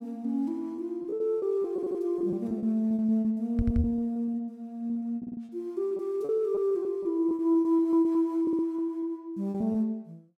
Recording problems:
packet loss; 14% of the sound replaced, filled with repeated pitch periods
audio stuttering; 4 times, first at 2 s
microphone thump; at 3.5 s; peak +4 dB vs average level

